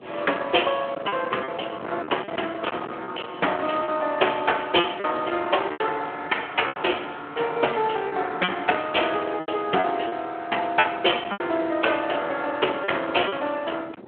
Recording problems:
phone line; 300 Hz to 3.3 kHz, Speex
distortion; hard clipping, uneven, signal-to-distortion ratio 16 dB
wind on the microphone; below 1.3 kHz, SNR 16 dB
packet loss; 7% of the sound replaced, filled with repeated pitch periods

